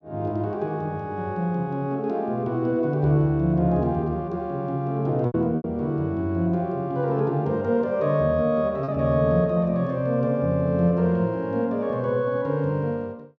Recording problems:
packet loss; 1.5% of the sound replaced, filled with repeated pitch periods

